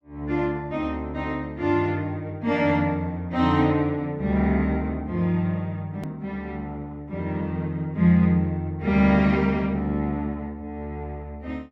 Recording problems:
edit click; at 6 s

